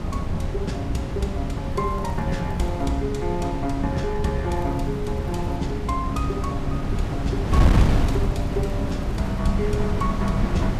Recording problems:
wind noise; below 190 Hz, SNR -2 dB
crackling; from 1.5 to 3 s, from 4.5 to 5.5 s and from 7.5 to 9.5 s; loose cable, SNR 29 dB

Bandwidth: 14.5 kHz